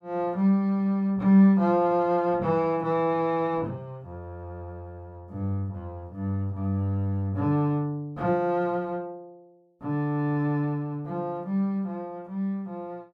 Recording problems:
none

